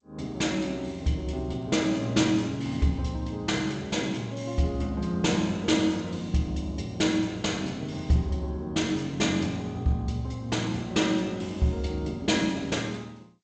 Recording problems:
lossy compression; G.722, log-spectral distance 3 dB, nothing above 7.3 kHz

